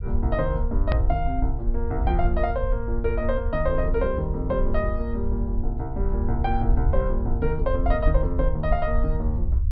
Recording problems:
treble missing; nothing above 5.5 kHz
low-frequency rumble; below 64 Hz, SNR 0 dB
edit click; at 1 s

